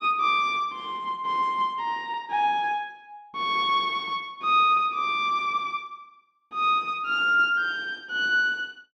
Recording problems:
none

